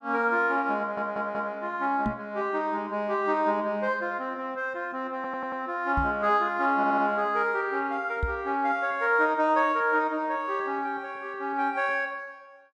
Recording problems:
stutter; at 1 s, at 5 s and at 7 s
microphone thump; at 2 s, at 6 s and at 8 s; peak +1 dB vs average level

